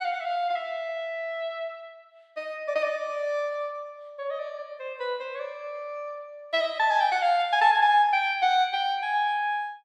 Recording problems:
none

